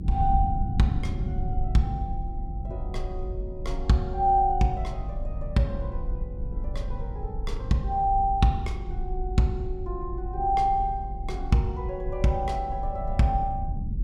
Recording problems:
low-frequency rumble; below 84 Hz, SNR 7 dB

